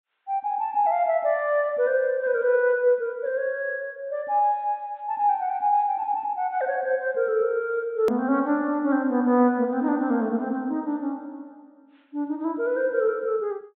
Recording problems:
low-pass filter; nothing above 4 kHz
edit click; at 8 s

